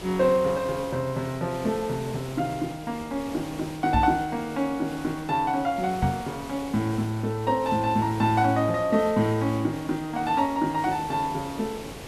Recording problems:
hiss; SNR 14 dB
microphone thump; at 4 s and at 6 s; peak +4 dB vs average level

